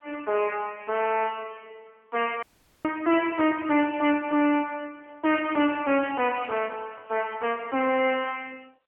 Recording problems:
telephone audio; 240 Hz to 3 kHz, AMR-NB
distortion; soft clipping, signal-to-distortion ratio 6 dB
audio cutting out; at 2.5 s

